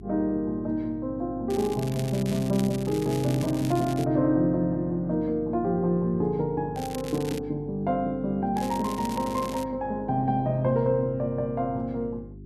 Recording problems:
hum; 50 Hz, harmonics up to 400 Hz, SNR 17 dB
crackling; from 1.5 to 4 s, at 7 s and from 8.5 to 9.5 s; loose cable, SNR 15 dB

